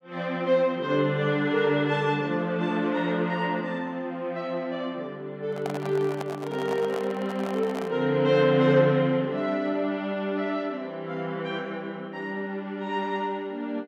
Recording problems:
microphone handling noise; from 5.5 to 8 s; peak -4 dB vs average level

